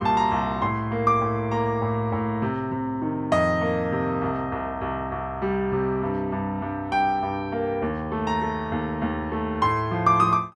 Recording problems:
none

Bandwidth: 12 kHz